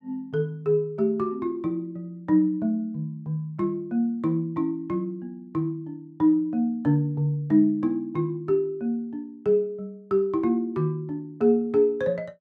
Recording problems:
none

